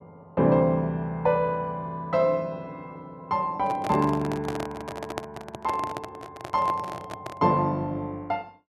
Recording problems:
handling noise; from 3.5 to 7.5 s; peak -1 dB vs average level

